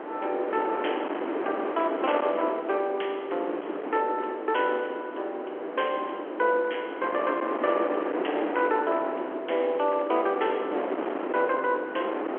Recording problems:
phone line; 280 Hz to 3.3 kHz, G.711
distorted audio; hard clipping, uneven, signal-to-distortion ratio 12 dB
wind noise; below 880 Hz, SNR 5 dB

